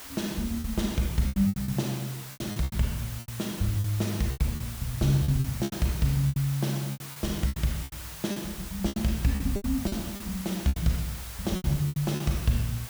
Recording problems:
background hiss; slope 0 dB per octave, SNR 11 dB
packet loss; 14% of the sound replaced, filled with repeated pitch periods

